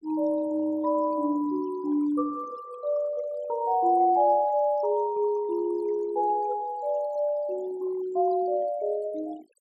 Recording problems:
denoising artefacts; signal-to-artefact ratio 21 dB

